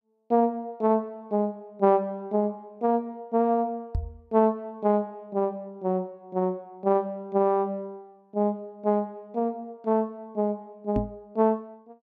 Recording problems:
microphone bump; at 4 s and at 11 s; peak +2 dB vs average level

